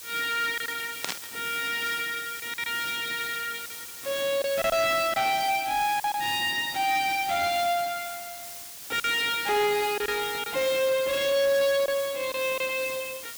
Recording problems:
lossy compression; AAC, log-spectral distance 2 dB
distortion; soft clipping, signal-to-distortion ratio 10 dB
background hiss; slope +1 dB per octave, SNR 11 dB
packet loss; 4% of the sound replaced, filled with silence
burst of static; at 1 s; peak +1 dB vs average level

